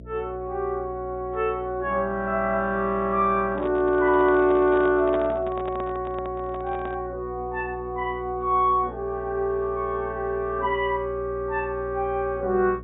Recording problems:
treble cut off; nothing above 4 kHz
hum; 60 Hz, harmonics up to 660 Hz, SNR 17 dB
microphone handling noise; from 3.5 to 7 s; peak -4 dB vs average level

